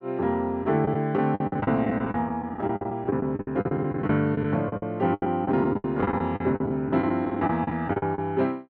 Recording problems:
lost packets; 17% of the sound replaced, filled with the last packet

